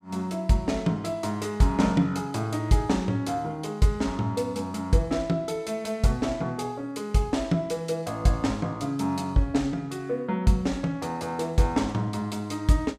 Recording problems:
none

